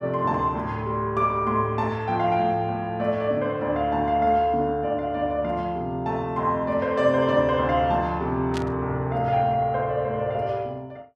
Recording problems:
static burst; at 8.5 s; peak -7 dB vs average level

